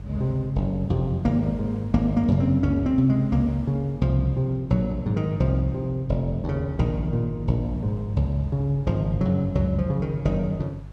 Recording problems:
electrical hum; 50 Hz, harmonics up to 350 Hz, SNR 16 dB
wind on the microphone; below 1.1 kHz, SNR 30 dB

